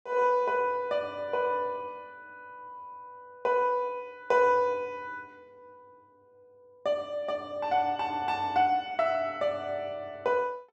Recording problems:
none

